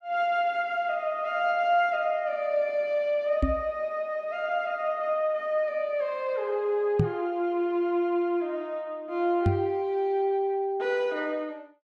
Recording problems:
microphone bump; at 3.5 s, at 7 s and at 9.5 s; peak +6 dB vs average level

